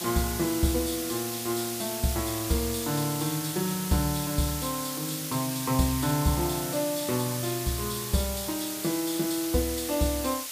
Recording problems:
background hiss; slope +3 dB per octave, SNR 4 dB

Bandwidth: 15 kHz